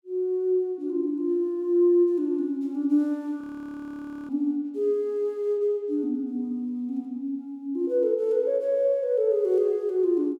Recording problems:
frozen audio; at 3.5 s for 1 s

